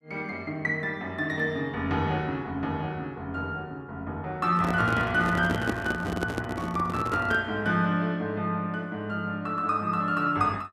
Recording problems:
handling noise; from 4.5 to 7.5 s; peak +3 dB vs average level

